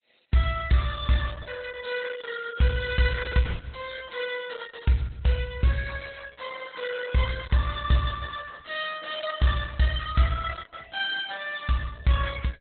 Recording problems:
lossy compression; Opus, log-spectral distance 7 dB, nothing above 3.7 kHz

